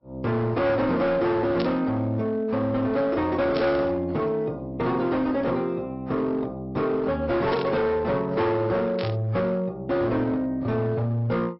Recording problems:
treble missing; nothing above 5.5 kHz
codec artefacts; AAC, log-spectral distance 2 dB
distortion; hard clipping, signal-to-distortion ratio 10 dB
burst of static; 4 times, first at 1.5 s; peak -5 dB vs average level

